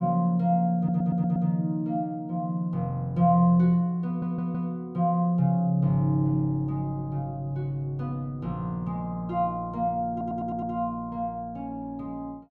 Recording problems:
stutter; at 1 s, at 4 s and at 10 s

